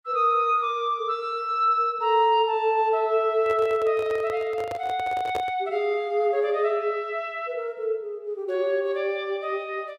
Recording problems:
handling noise; from 3.5 to 5.5 s; peak -3 dB vs average level

